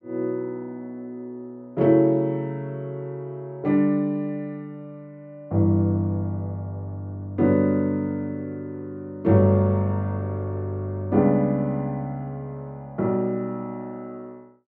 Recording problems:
none

